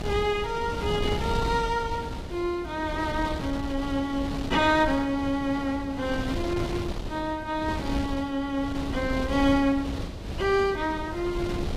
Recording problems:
lossy codec; Vorbis, log-spectral distance 3 dB, nothing above 15.1 kHz
wind on the microphone; below 390 Hz, SNR 7 dB

